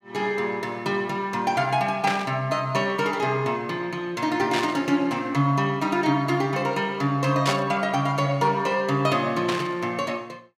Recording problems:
static burst; 4 times, first at 2 s; peak +1 dB vs average level

